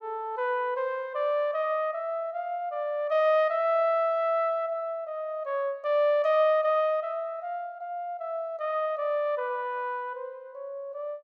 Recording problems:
none

